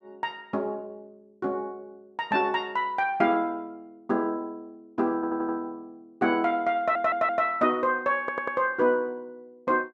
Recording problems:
stutter; at 5 s, at 7 s and at 8 s

